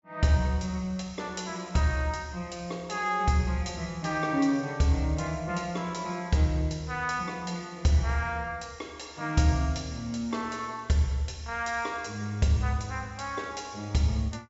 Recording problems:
treble missing; nothing above 8 kHz

